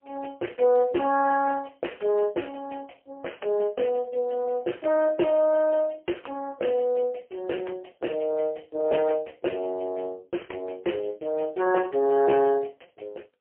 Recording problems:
phone line; 300 Hz to 3.1 kHz, AMR-NB, then MP3

